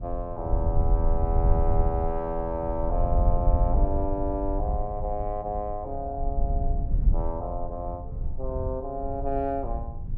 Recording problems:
rumble; below 72 Hz, SNR -1 dB

